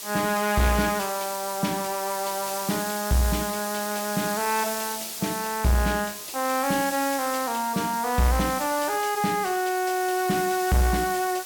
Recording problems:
distorted audio; soft clipping, signal-to-distortion ratio 12 dB
hiss; slope +1 dB per octave, SNR 7 dB

